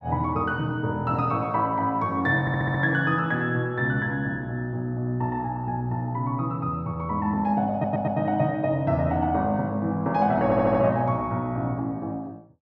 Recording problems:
stutter; at 2.5 s, at 7.5 s and at 10 s

